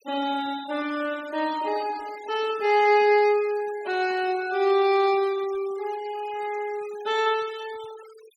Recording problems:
denoising artefacts; signal-to-artefact ratio 21 dB

